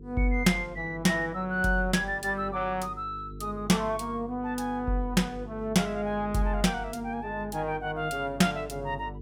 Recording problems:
electrical hum; 50 Hz, harmonics up to 450 Hz, SNR 15 dB

